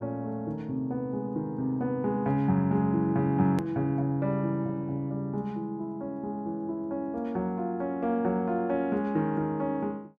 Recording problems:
hard cut with a click; at 3.5 s

